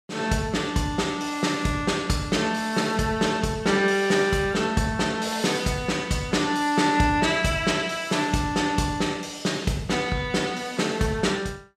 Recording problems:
none

